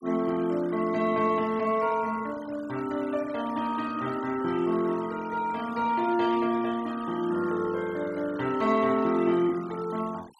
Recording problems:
noise reduction artefacts; signal-to-artefact ratio 20 dB

